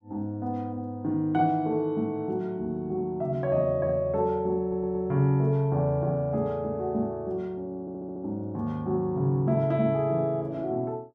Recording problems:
audio stuttering; at 4.5 s and at 8 s

